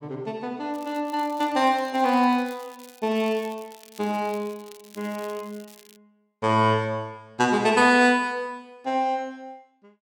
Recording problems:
crackle; from 0.5 to 6 s; loose cable, SNR 25 dB

